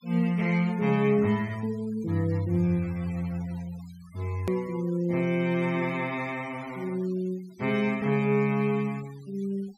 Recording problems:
denoising artefacts; signal-to-artefact ratio 23 dB
edit click; at 4.5 s

